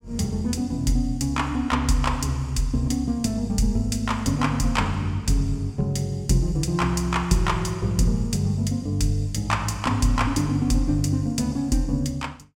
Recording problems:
none

